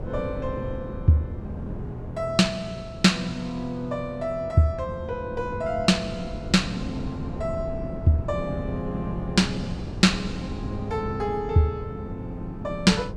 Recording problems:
wind on the microphone; below 240 Hz, SNR 10 dB

